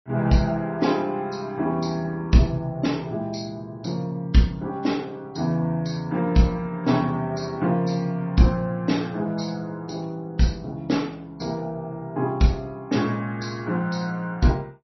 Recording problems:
codec artefacts; MP3, log-spectral distance 2 dB, nothing above 5.8 kHz

